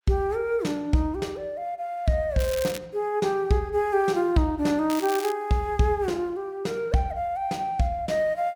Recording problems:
crackling; at 2.5 s and at 5 s; loose cable, SNR 12 dB

